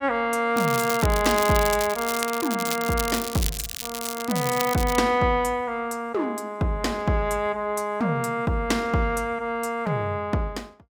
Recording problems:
crackling; from 0.5 to 5 s; loose cable, SNR 7 dB

